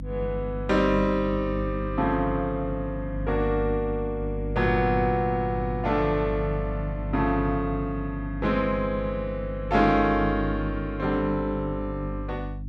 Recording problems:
hum; 50 Hz, harmonics up to 300 Hz, SNR 7 dB

